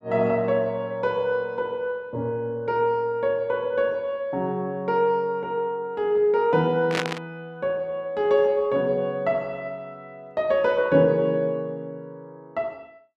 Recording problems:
burst of static; at 7 s; peak +1 dB vs average level

